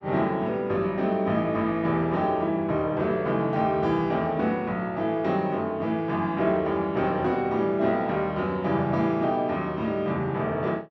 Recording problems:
none

